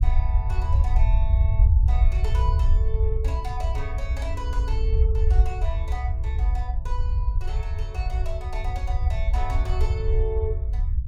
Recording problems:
rumble; below 74 Hz, SNR -11 dB

